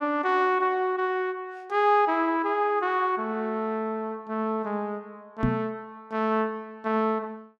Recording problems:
knock on the microphone; at 5.5 s; peak +4 dB vs average level

